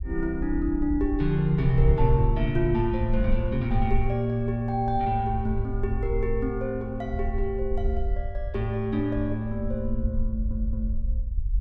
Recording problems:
low-frequency rumble; below 58 Hz, SNR 5 dB
audio stuttering; at 10 s

